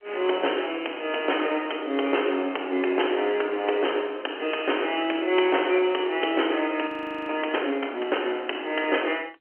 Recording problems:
telephone audio; 240 Hz to 3.2 kHz, G.711
audio freezing; at 7 s

